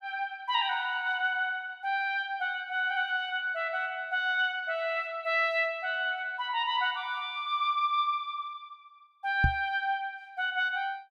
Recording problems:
microphone thump; at 9.5 s; peak +6 dB vs average level

